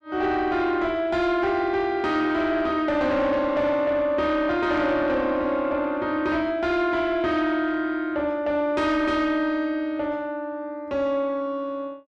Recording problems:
distorted audio; soft clipping, signal-to-distortion ratio 12 dB

